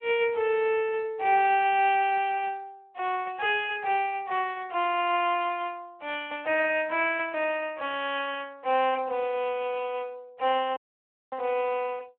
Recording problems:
phone line; 340 Hz to 3.2 kHz, Speex
dropout; at 11 s for 0.5 s

